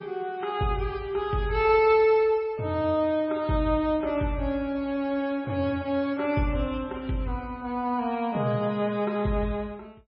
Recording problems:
lossy compression; MP3, log-spectral distance 2 dB, nothing above 4.4 kHz

